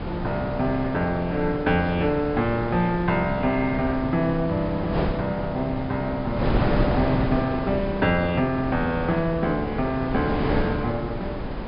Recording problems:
treble cut off; nothing above 5.1 kHz
wind noise; below 580 Hz, SNR 5 dB

